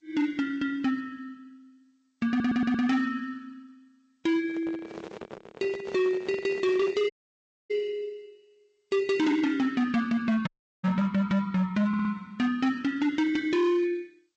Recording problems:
lossy compression; Vorbis, then G.722, log-spectral distance 2 dB, nothing above 7.8 kHz
distorted audio; hard clipping, signal-to-distortion ratio 12 dB
audio stuttering; at 2.5 s and at 12 s
handling noise; from 4.5 to 7 s; peak -8 dB vs average level
audio cutting out; at 7 s for 0.5 s and at 10 s

